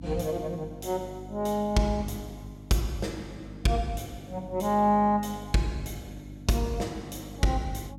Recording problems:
hum; 50 Hz, harmonics up to 300 Hz, SNR 15 dB

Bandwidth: 16.5 kHz